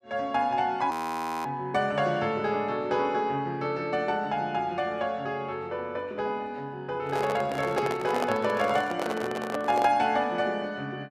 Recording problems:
frozen audio; at 1 s for 0.5 s
handling noise; from 7 to 10 s; peak +2 dB vs average level

